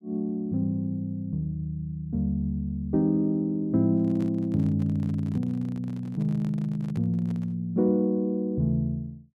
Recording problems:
handling noise; from 4 to 7.5 s; peak -9 dB vs average level

